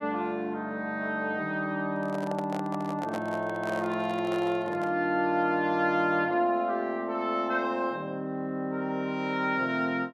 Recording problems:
handling noise; from 2 to 5 s; peak -4 dB vs average level

